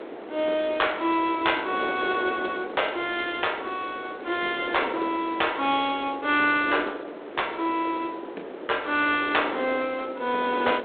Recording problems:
telephone audio; 300 Hz to 3.8 kHz, G.726
wind noise; below 740 Hz, SNR 10 dB

